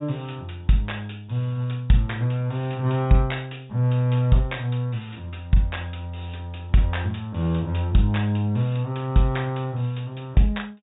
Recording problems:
treble cut off; nothing above 4 kHz

